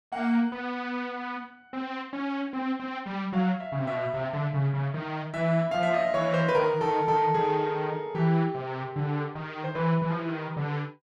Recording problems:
none

